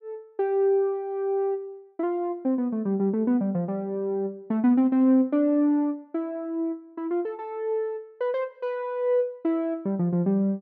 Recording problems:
none

